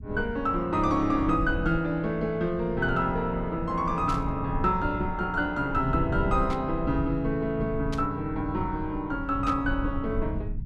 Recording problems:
low-frequency rumble; below 110 Hz, SNR 9 dB
static burst; 4 times, first at 4 s; peak -8 dB vs average level

